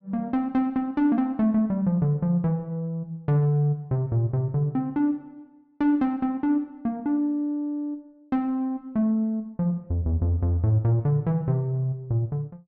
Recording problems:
none

